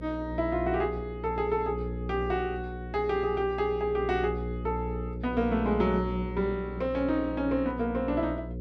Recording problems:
hum; 60 Hz, harmonics up to 540 Hz, SNR 7 dB

